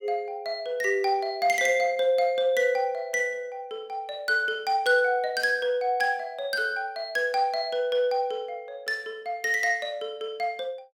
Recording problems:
none

